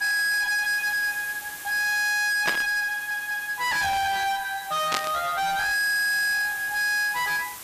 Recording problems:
distortion; soft clipping, signal-to-distortion ratio 6 dB
background hiss; slope 0 dB per octave, SNR 15 dB
static burst; at 2.5 s and at 5 s; peak +2 dB vs average level
audio stuttering; at 3 s and at 6 s

